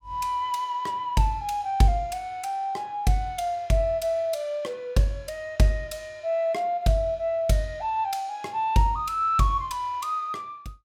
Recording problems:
none

